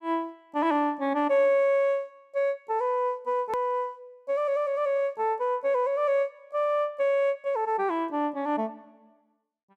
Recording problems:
click at an edit; at 3.5 s

